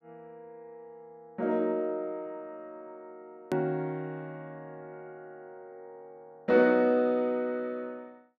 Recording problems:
hard cut with a click; at 3.5 s

